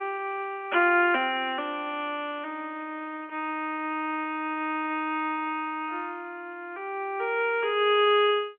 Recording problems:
phone line; 240 Hz to 3.2 kHz, G.711

